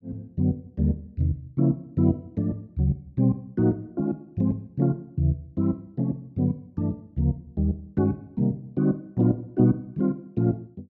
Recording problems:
none

